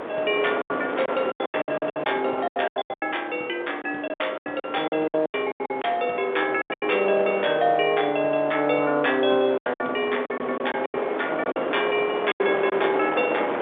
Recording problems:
telephone audio; 280 Hz to 3.6 kHz, G.711
wind on the microphone; below 1.1 kHz, SNR 7 dB
lost packets; 14% of the sound replaced, filled with silence

